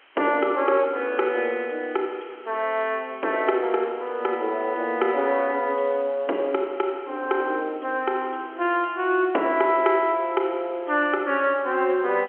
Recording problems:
telephone audio; 260 Hz to 3.3 kHz, G.711
background hiss; SNR 27 dB

